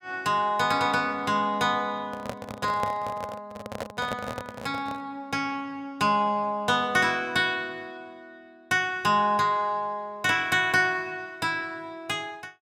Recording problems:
microphone handling noise; from 2 to 5 s; peak -2 dB vs average level

